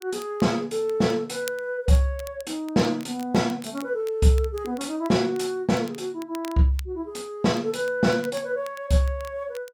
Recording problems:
crackling; vinyl, SNR 22 dB

